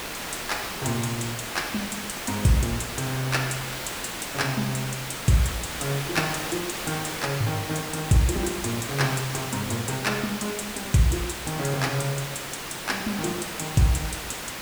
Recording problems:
hiss; slope -2 dB per octave, SNR 4 dB

